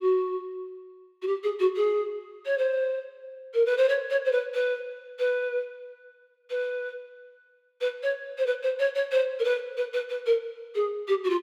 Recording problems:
none

